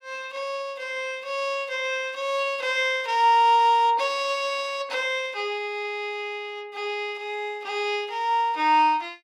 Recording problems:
none

